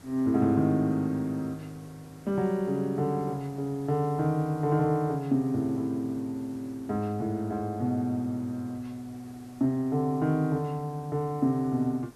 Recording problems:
background hiss; slope -5 dB per octave, SNR 25 dB

